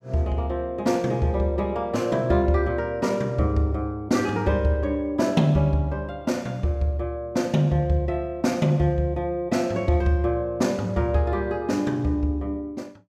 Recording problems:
none

